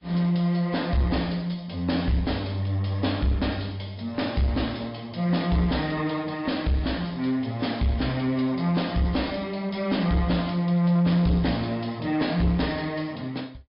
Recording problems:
treble missing; nothing above 5.2 kHz
lossy compression; AAC, log-spectral distance 3 dB
distorted audio; soft clipping, signal-to-distortion ratio 11 dB

